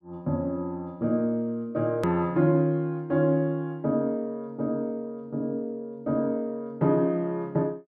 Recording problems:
click at an edit; at 2 s

